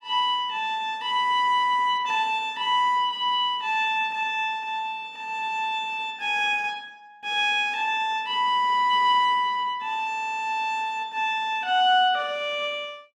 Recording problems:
stutter; at 10 s

